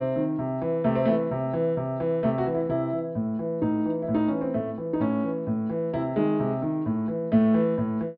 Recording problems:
treble cut off; nothing above 5.5 kHz

